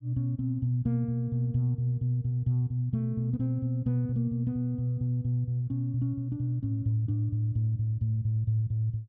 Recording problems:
none

